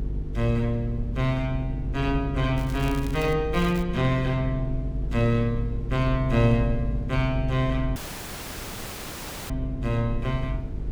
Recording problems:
hum; 50 Hz, harmonics up to 450 Hz, SNR 7 dB
rumble; below 72 Hz, SNR 11 dB
wind noise; below 330 Hz, SNR 21 dB
crackling; at 2.5 s and at 3.5 s; loose cable, SNR 18 dB
dropout; at 8 s for 1.5 s

